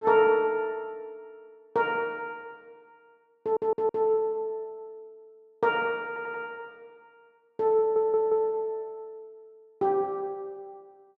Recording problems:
stutter; at 3.5 s, at 6 s and at 8 s

